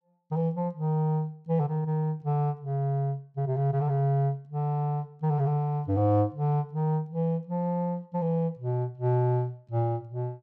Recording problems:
none

